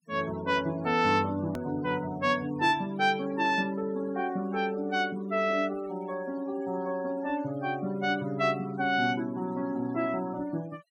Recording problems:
denoising artefacts; signal-to-artefact ratio 20 dB
edit click; at 1.5 s

